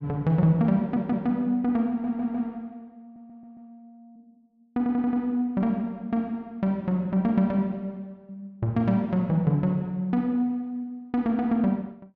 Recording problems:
audio stuttering; 4 times, first at 1 s

